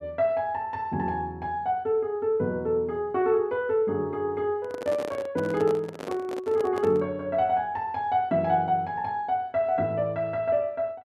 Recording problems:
microphone handling noise; from 4.5 to 7 s; peak -5 dB vs average level

